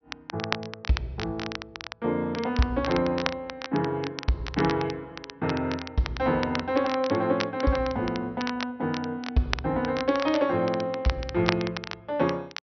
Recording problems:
treble cut off; nothing above 6 kHz
crackling; vinyl, SNR 9 dB

